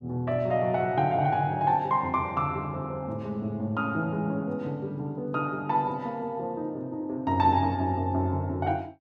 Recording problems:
none

